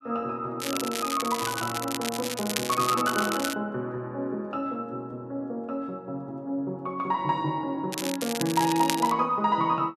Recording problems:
crackle; from 0.5 to 3.5 s and from 8 to 9 s; loose cable, SNR 5 dB

